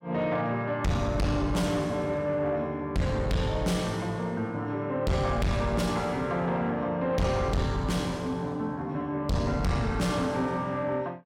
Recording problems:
distorted audio; soft clipping, signal-to-distortion ratio 7 dB

